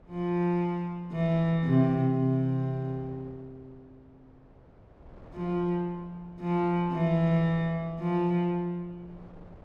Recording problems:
wind noise; below 530 Hz, SNR 24 dB

